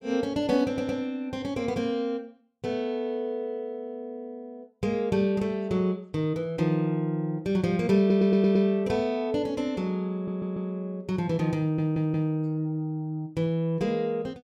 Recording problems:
stutter; 4 times, first at 0.5 s

